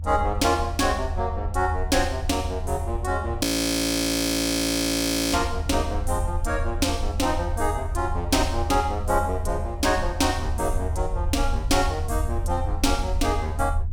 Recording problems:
low-frequency rumble; below 80 Hz, SNR 5 dB
audio freezing; at 3.5 s for 2 s

